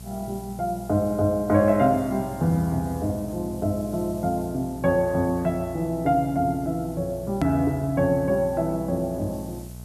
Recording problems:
mains hum; 60 Hz, harmonics up to 900 Hz, SNR 16 dB
background hiss; slope +5 dB per octave, SNR 23 dB
edit click; at 7.5 s

